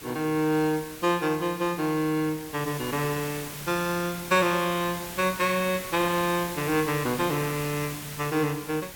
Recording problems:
hiss; slope -1 dB per octave, SNR 11 dB

